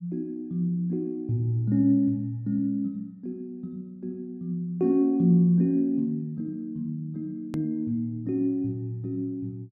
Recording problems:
click at an edit; at 7.5 s

